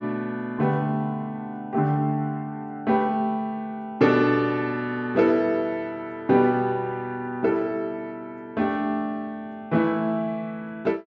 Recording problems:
low-pass filter; nothing above 7.8 kHz

